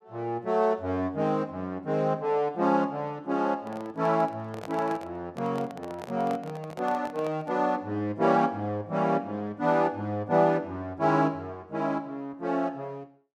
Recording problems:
microphone handling noise; from 3.5 to 7.5 s; peak -7 dB vs average level

